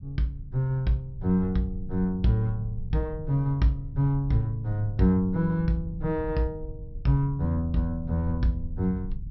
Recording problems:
low-pass filter; nothing above 5.6 kHz
low-frequency rumble; below 86 Hz, SNR 12 dB

